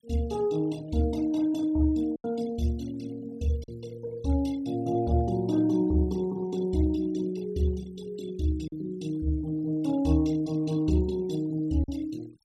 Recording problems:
noise reduction artefacts; signal-to-artefact ratio 22 dB
packet loss; 1.6% of the sound replaced, filled with silence

